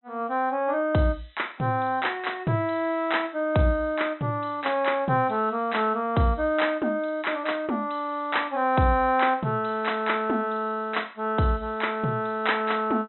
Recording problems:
low-pass filter; nothing above 4 kHz

